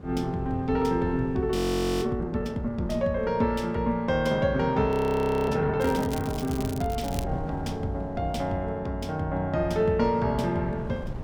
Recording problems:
wind noise; below 240 Hz, SNR 16 dB
audio freezing; at 1.5 s and at 5 s for 0.5 s
crackling; from 6 to 7 s; loose cable, SNR 16 dB

